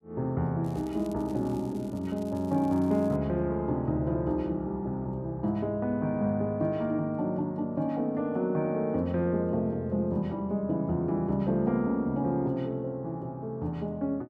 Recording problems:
crackle; from 0.5 to 3 s; loose cable, SNR 27 dB

